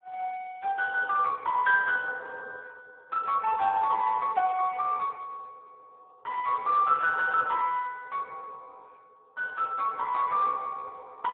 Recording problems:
phone line; 320 Hz to 3 kHz, Speex

